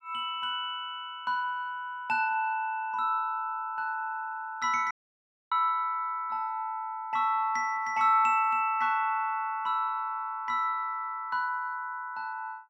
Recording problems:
audio cutting out; at 5 s for 0.5 s

